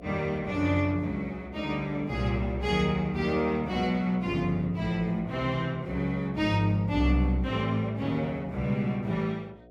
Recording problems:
hum; 60 Hz, harmonics up to 720 Hz, SNR 21 dB

